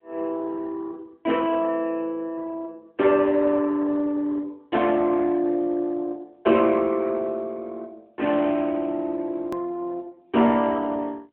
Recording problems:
phone line; 260 Hz to 3.5 kHz, AMR-NB
edit click; at 9.5 s

